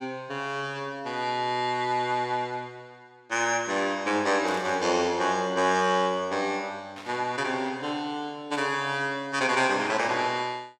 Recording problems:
static burst; at 4.5 s, at 7 s and at 8.5 s; peak -10 dB vs average level

